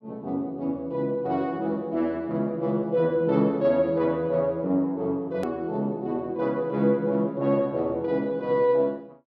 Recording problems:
edit click; at 5.5 s

